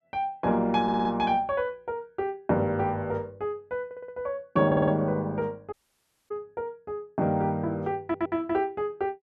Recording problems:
audio stuttering; 4 times, first at 1 s
dropout; at 5.5 s for 0.5 s

